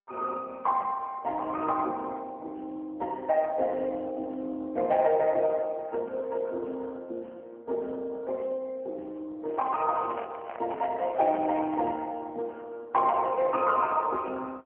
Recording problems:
telephone audio; 280 Hz to 3.2 kHz, AMR-NB
microphone handling noise; from 9.5 to 12 s; peak -6 dB vs average level

